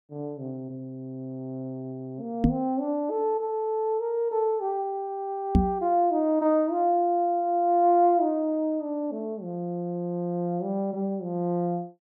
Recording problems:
knock on the microphone; at 2.5 s and at 5.5 s; peak +9 dB vs average level

